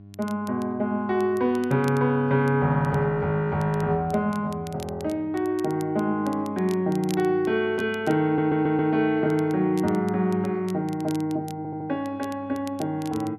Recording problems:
electrical hum; 50 Hz, harmonics up to 700 Hz, SNR 22 dB
crackling; vinyl, SNR 23 dB
audio stuttering; at 8.5 s and at 12 s

